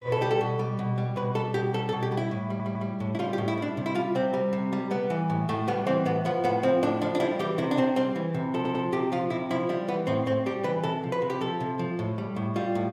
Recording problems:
stutter; at 2.5 s and at 8.5 s

